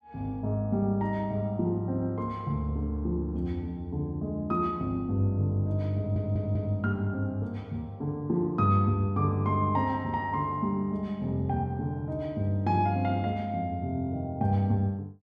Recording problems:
stutter; at 6 s

